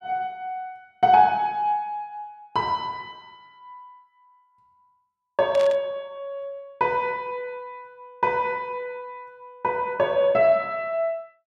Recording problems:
static burst; at 5.5 s; peak -8 dB vs average level

